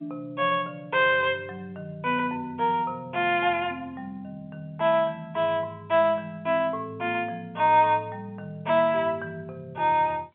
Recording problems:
phone line; 220 Hz to 3.5 kHz, G.711

